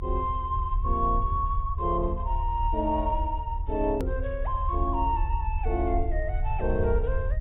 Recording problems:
treble missing; nothing above 4 kHz
rumble; below 72 Hz, strongest tone 34 Hz, SNR 2 dB
hard cut with a click; at 4 s

